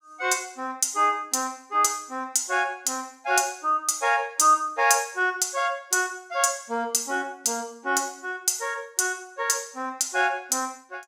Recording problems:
none

